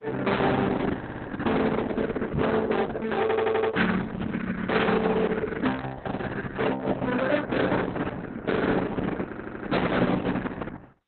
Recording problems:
lossy codec; Opus, then Opus, log-spectral distance 4 dB, nothing above 4 kHz
distorted audio; hard clipping, uneven, signal-to-distortion ratio 6 dB
audio stuttering; at 1 s, at 3 s and at 9.5 s
knock on the microphone; at 2.5 s; peak +2 dB vs average level

